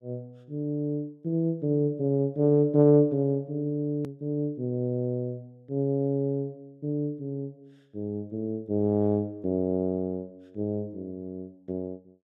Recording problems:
edit click; at 4 s

